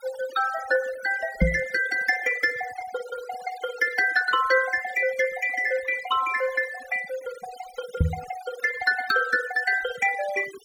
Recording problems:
noise reduction artefacts; signal-to-artefact ratio 15 dB
microphone bump; at 1.5 s and at 8 s; peak +7 dB vs average level

